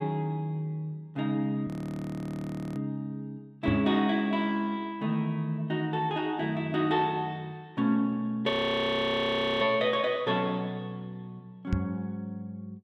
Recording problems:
audio freezing; at 1.5 s for 1 s and at 8.5 s for 1 s
microphone thump; at 3.5 s and at 12 s; peak +4 dB vs average level

